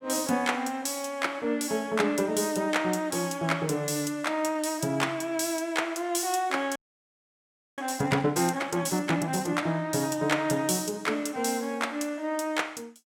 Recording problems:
audio freezing; at 7 s for 1 s

